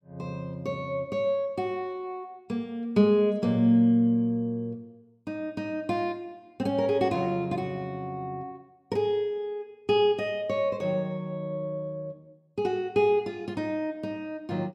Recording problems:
none

